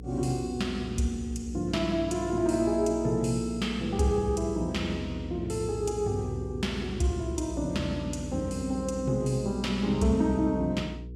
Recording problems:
hum; 60 Hz, harmonics up to 480 Hz, SNR 12 dB

